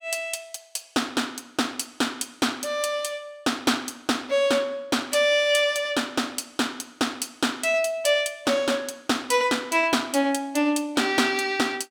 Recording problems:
none

